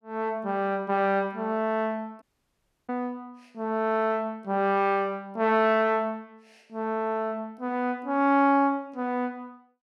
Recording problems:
audio cutting out; at 2 s for 0.5 s

